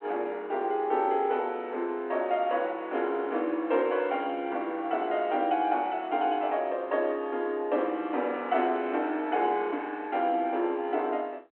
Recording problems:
phone line; 240 Hz to 3.4 kHz, G.726

